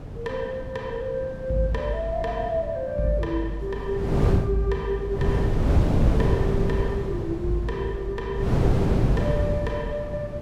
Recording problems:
wind on the microphone; below 240 Hz, SNR -2 dB

